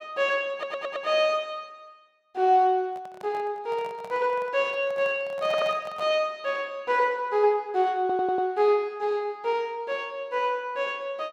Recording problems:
audio stuttering; at 0.5 s, at 5.5 s and at 8 s
handling noise; from 3 to 6 s; peak -10 dB vs average level

